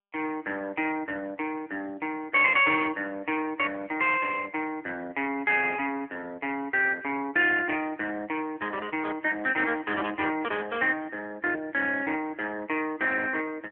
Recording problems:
phone line; 260 Hz to 3.3 kHz, AMR-NB

